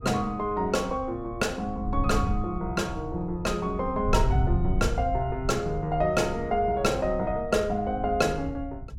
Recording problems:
wind noise; below 92 Hz, SNR 7 dB

